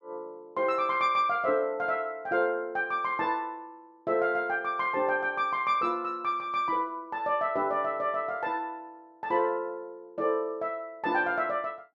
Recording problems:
none

